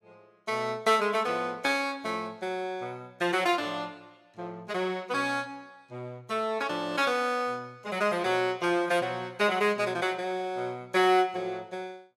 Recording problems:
none

